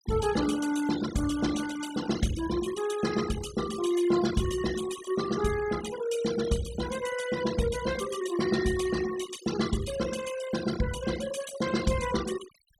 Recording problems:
noise reduction artefacts; signal-to-artefact ratio 10 dB

